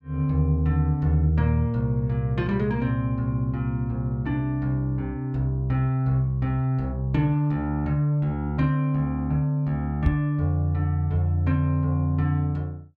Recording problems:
microphone thump; at 10 s; peak +4 dB vs average level

